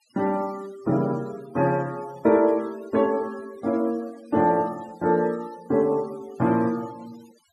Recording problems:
denoising artefacts; signal-to-artefact ratio 24 dB

